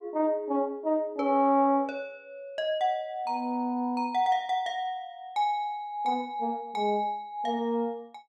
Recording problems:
none

